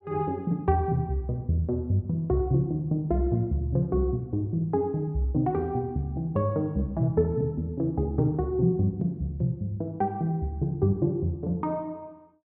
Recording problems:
none

